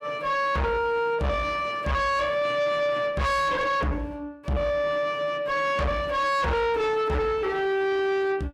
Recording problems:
distorted audio; soft clipping, signal-to-distortion ratio 7 dB

